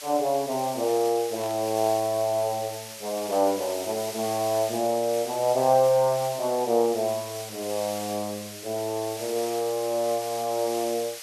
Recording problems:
hiss; slope +3 dB per octave, SNR 11 dB
burst of static; at 1.5 s; peak -14 dB vs average level

